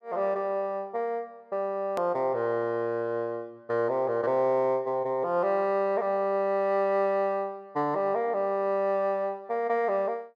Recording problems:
edit click; at 2 s

